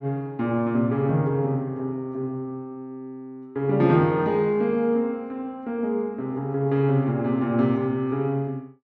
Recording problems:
none

